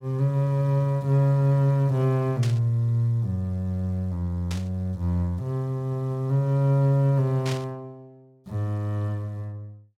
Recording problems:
burst of static; at 2.5 s, at 4.5 s and at 7.5 s; peak -6 dB vs average level

